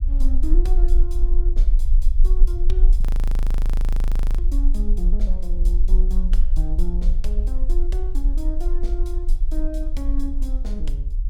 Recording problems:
rumble; below 38 Hz, strongest tone 20 Hz, SNR -11 dB
audio freezing; at 3 s for 1.5 s

